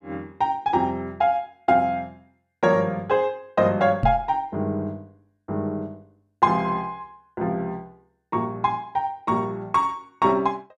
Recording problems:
microphone thump; at 4 s; peak +4 dB vs average level

